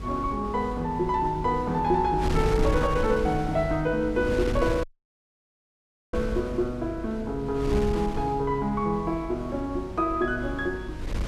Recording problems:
hum; 50 Hz, harmonics up to 500 Hz, SNR 14 dB
wind noise; below 240 Hz, SNR 8 dB
audio cutting out; at 5 s for 1.5 s

